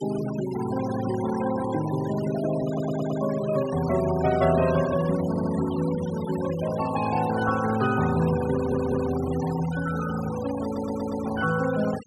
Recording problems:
noise reduction artefacts; signal-to-artefact ratio 13 dB
audio stuttering; 4 times, first at 2.5 s

